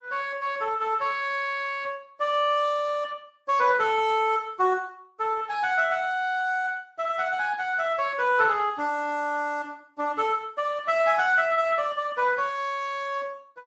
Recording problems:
codec artefacts; Speex, then MP3, log-spectral distance 3 dB, nothing above 7.3 kHz

